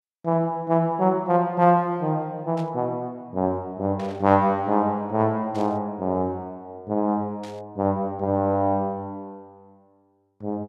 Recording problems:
burst of static; 4 times, first at 2.5 s; peak -15 dB vs average level

